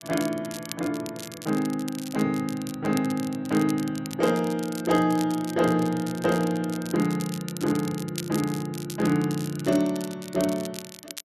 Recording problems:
crackle; vinyl, SNR 14 dB

